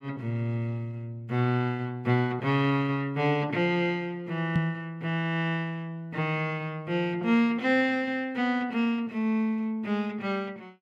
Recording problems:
microphone bump; at 4.5 s; peak +7 dB vs average level

